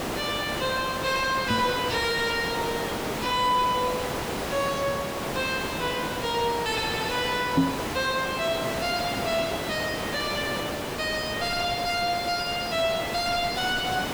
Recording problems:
distortion; soft clipping, signal-to-distortion ratio 2 dB
background hiss; slope -5 dB per octave, SNR 4 dB
microphone bump; at 1.5 s and at 7.5 s; peak +10 dB vs average level

